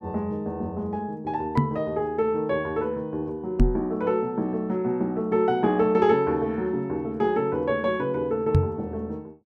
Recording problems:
microphone bump; at 1.5 s, at 3.5 s and at 8.5 s; peak +9 dB vs average level

